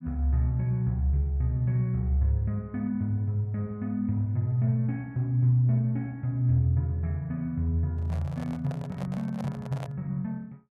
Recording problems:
handling noise; from 8 to 10 s; peak -9 dB vs average level

